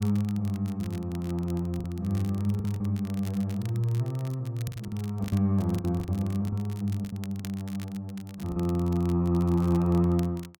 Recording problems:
crackle; vinyl, SNR 21 dB
lost packets; 6% of the sound replaced, filled with the last packet

